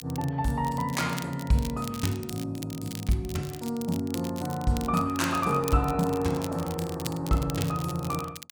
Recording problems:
crackle; vinyl, SNR 13 dB

